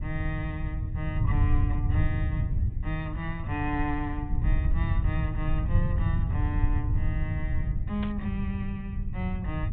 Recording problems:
treble cut off; nothing above 4 kHz
low-frequency rumble; below 100 Hz, SNR -5 dB
static burst; at 8 s; peak -2 dB vs average level

